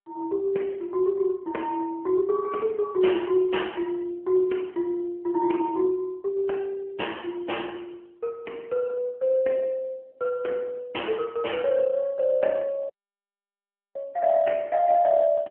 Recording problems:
phone line; 260 Hz to 3.2 kHz, AMR-NB
dropout; at 13 s for 1 s

